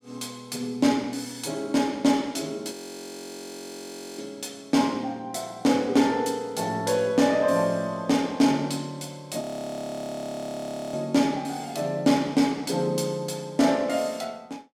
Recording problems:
frozen audio; at 2.5 s for 1.5 s and at 9.5 s for 1.5 s

